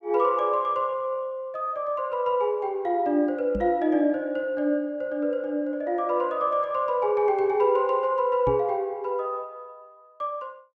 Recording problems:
microphone bump; at 3.5 s and at 8.5 s; peak -3 dB vs average level

